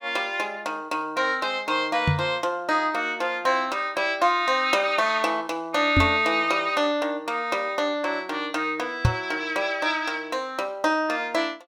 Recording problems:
knock on the microphone; at 2 s, at 6 s and at 9 s; peak +7 dB vs average level

